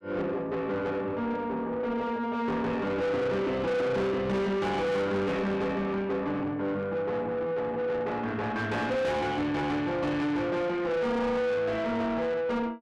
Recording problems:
distorted audio; soft clipping, signal-to-distortion ratio 8 dB

